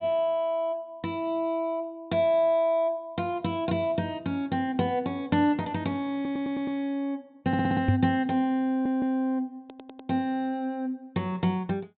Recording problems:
low-pass filter; nothing above 4 kHz
audio stuttering; 4 times, first at 6 s
microphone bump; at 8 s; peak +9 dB vs average level

